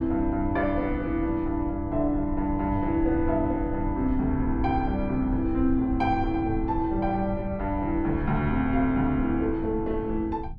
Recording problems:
rumble; below 90 Hz, SNR 9 dB

